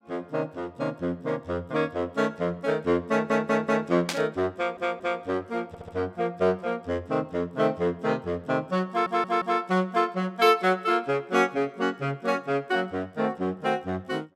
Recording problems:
audio stuttering; 4 times, first at 3 s
static burst; at 4 s; peak +2 dB vs average level

